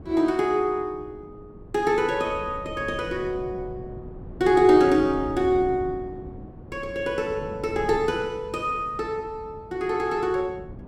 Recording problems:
wind on the microphone; below 260 Hz, SNR 16 dB

